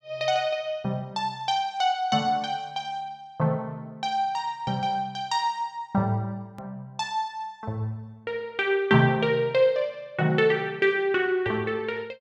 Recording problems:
hard cut with a click; at 6.5 s

